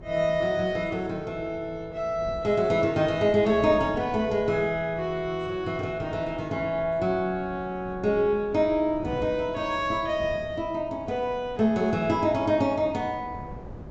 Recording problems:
low-pass filter; nothing above 8 kHz
wind on the microphone; below 340 Hz, SNR 17 dB

